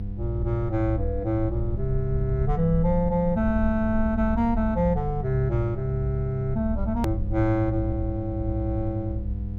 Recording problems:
hum; 50 Hz, harmonics up to 500 Hz, SNR 9 dB
rumble; below 60 Hz, SNR 6 dB
hard cut with a click; at 7 s

